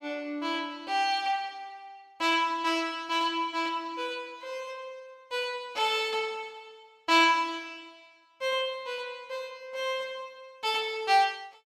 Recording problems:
none

